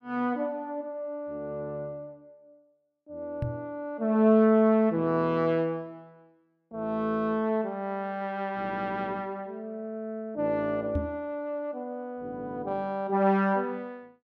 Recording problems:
microphone thump; at 3.5 s and at 11 s; peak +2 dB vs average level

